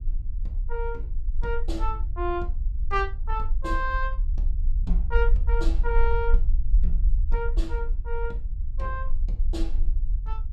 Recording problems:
rumble; below 46 Hz, strongest tone 20 Hz, SNR -4 dB

